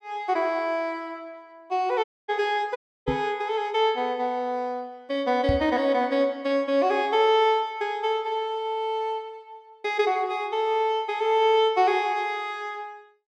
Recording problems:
audio cutting out; at 2 s and at 3 s
microphone thump; at 3 s and at 5.5 s; peak +2 dB vs average level

